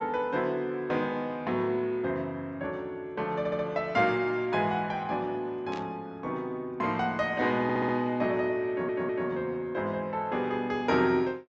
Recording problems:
treble cut off; nothing above 8 kHz
audio stuttering; at 3.5 s, at 7.5 s and at 8.5 s
burst of static; at 5.5 s; peak -10 dB vs average level

